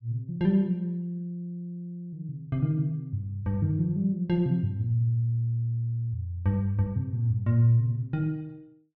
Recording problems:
none

